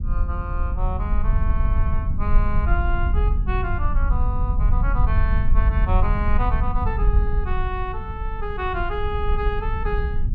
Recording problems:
low-frequency rumble; below 66 Hz, SNR -6 dB

